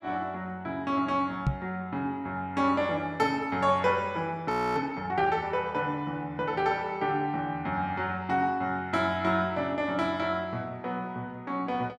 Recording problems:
microphone bump; at 1.5 s; peak +6 dB vs average level
audio freezing; at 4.5 s

